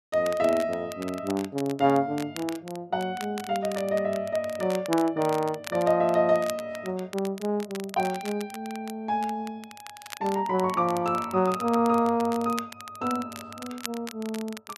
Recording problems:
crackling; vinyl, SNR 16 dB

